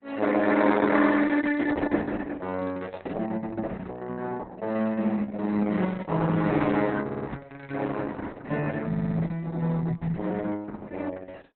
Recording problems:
lossy codec; Opus, log-spectral distance 4 dB, nothing above 4 kHz
stutter; at 7 s and at 9 s

